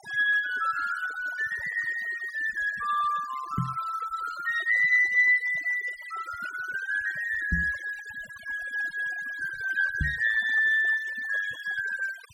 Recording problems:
denoising artefacts; signal-to-artefact ratio 19 dB
microphone thump; at 3.5 s, at 7.5 s and at 10 s; peak +1 dB vs average level

